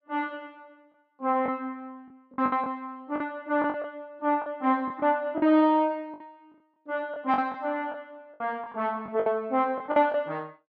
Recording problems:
packet loss; 9% of the sound replaced, filled with the last packet

